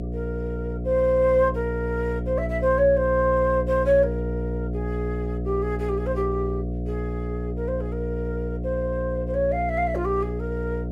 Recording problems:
electrical hum; 60 Hz, harmonics up to 720 Hz, SNR 4 dB

